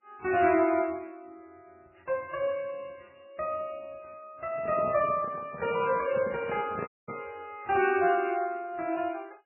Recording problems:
lossy codec; MP3, then MP3, log-spectral distance 3 dB, nothing above 2.4 kHz
microphone handling noise; from 4.5 to 7.5 s; peak -4 dB vs average level
audio cutting out; at 7 s

